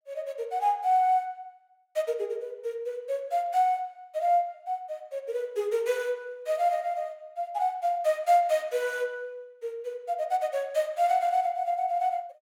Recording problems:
none

